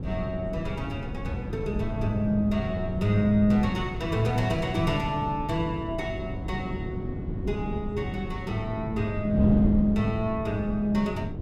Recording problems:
wind noise; below 220 Hz, SNR 5 dB

